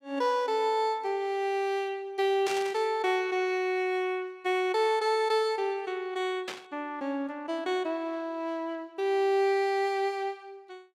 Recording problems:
burst of static; at 2.5 s and at 6.5 s; peak -3 dB vs average level

